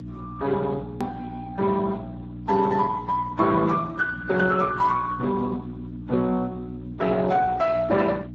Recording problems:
codec artefacts; Vorbis, then Speex, log-spectral distance 3 dB, nothing above 13.1 kHz
hum; 60 Hz, harmonics up to 300 Hz, SNR 13 dB
click at an edit; at 1 s

